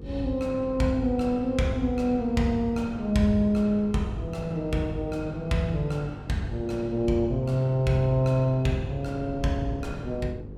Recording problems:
hum; 50 Hz, harmonics up to 500 Hz, SNR 15 dB
wind on the microphone; below 220 Hz, SNR 19 dB

